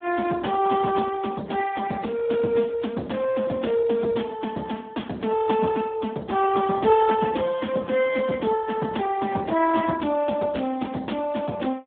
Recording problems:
phone line; 130 Hz to 3.6 kHz, Speex

